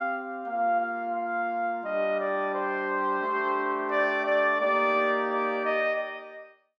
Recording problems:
none

